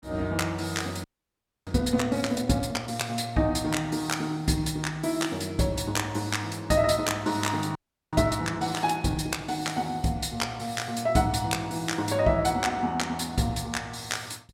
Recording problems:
audio freezing; at 1 s for 0.5 s and at 8 s

